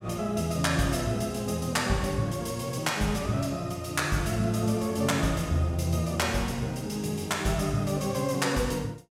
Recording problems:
none

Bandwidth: 16 kHz